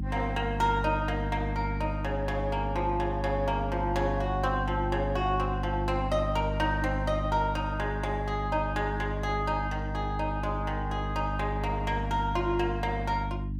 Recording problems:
hum; 50 Hz, harmonics up to 300 Hz, SNR 3 dB

